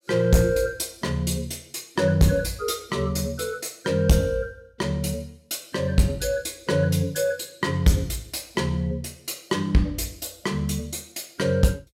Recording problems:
distorted audio; hard clipping, uneven, signal-to-distortion ratio 10 dB

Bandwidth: 16 kHz